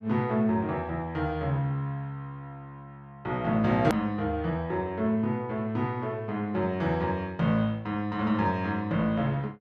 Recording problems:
click at an edit; at 4 s

